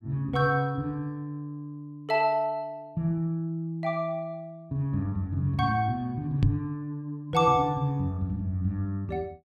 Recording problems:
microphone bump; at 6.5 s; peak +9 dB vs average level

